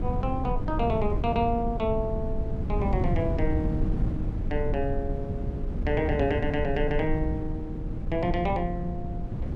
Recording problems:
hum; 60 Hz, harmonics up to 960 Hz, SNR 20 dB
wind noise; below 140 Hz, SNR 1 dB

